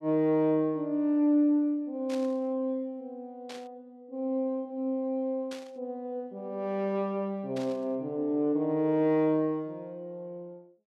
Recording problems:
burst of static; 4 times, first at 2 s; peak -11 dB vs average level

